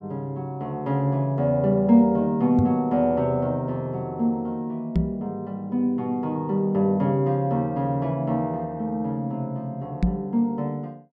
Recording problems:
microphone thump; at 2.5 s, at 5 s and at 10 s; peak +6 dB vs average level

